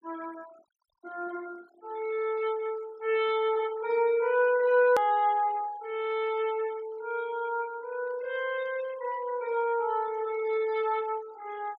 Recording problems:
denoising artefacts; signal-to-artefact ratio 23 dB
hard cut with a click; at 5 s

